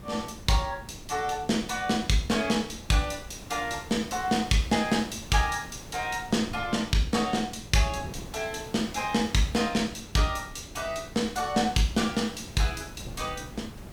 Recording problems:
hiss; slope -5 dB per octave, SNR 21 dB
wind noise; below 260 Hz, SNR 17 dB

